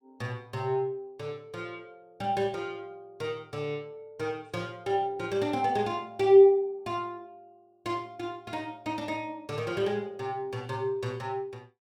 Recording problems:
none

